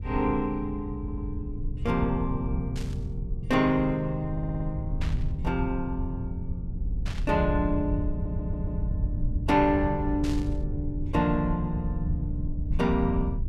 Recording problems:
low-frequency rumble; below 96 Hz, SNR 4 dB
stutter; 4 times, first at 1 s
burst of static; 4 times, first at 3 s; peak -7 dB vs average level

